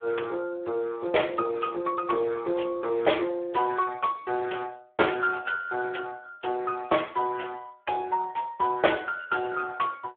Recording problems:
phone line; 280 Hz to 3.4 kHz, Speex

